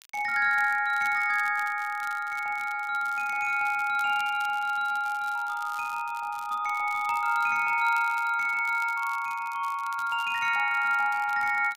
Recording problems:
crackling; vinyl, SNR 23 dB

